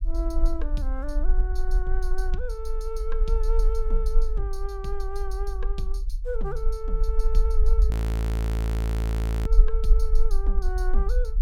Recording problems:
low-frequency rumble; below 50 Hz, SNR -9 dB
audio freezing; at 8 s for 1.5 s

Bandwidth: 16.5 kHz